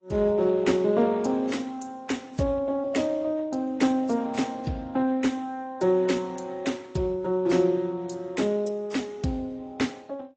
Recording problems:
lossy compression; Speex, then AAC, log-spectral distance 3 dB

